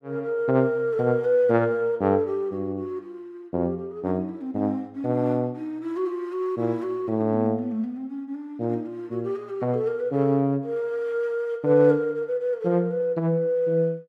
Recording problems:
none

